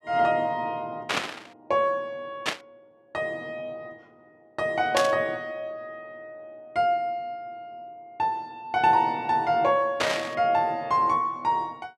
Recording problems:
burst of static; 4 times, first at 1 s; peak +4 dB vs average level

